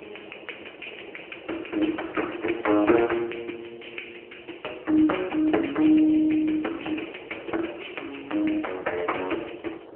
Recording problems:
telephone audio; 280 Hz to 3 kHz, AMR-NB
wind on the microphone; below 650 Hz, SNR 20 dB

